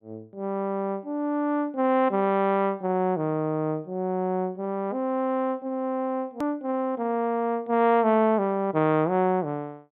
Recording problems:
low-pass filter; nothing above 4 kHz
edit click; at 6.5 s

